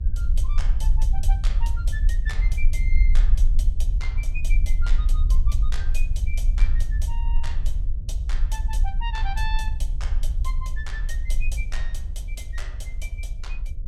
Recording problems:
hum; 60 Hz, harmonics up to 600 Hz, SNR 25 dB
rumble; below 48 Hz, strongest tone 22 Hz, SNR -12 dB

